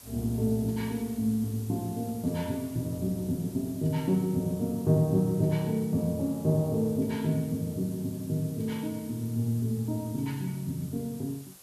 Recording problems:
hiss; SNR 19 dB

